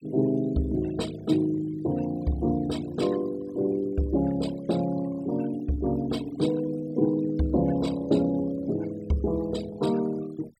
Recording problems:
denoising artefacts; signal-to-artefact ratio 21 dB

